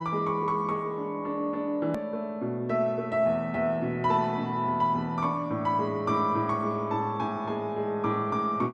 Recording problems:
edit click; at 2 s

